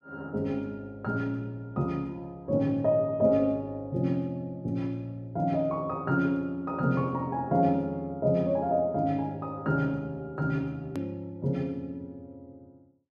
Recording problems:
edit click; at 11 s

